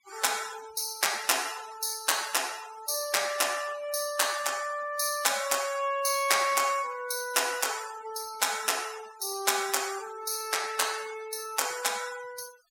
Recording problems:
noise reduction artefacts; signal-to-artefact ratio 15 dB

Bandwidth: 17.5 kHz